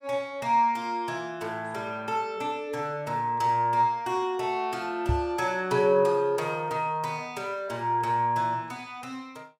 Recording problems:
microphone thump; at 5 s; peak +4 dB vs average level

